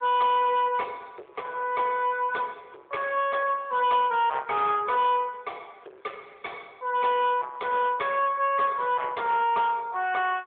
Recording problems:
phone line; 340 Hz to 3.5 kHz, AMR-NB
distortion; soft clipping, signal-to-distortion ratio 10 dB

